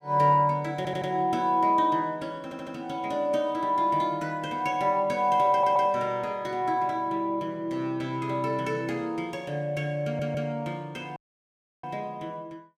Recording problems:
audio stuttering; 4 times, first at 1 s
audio cutting out; at 11 s for 0.5 s

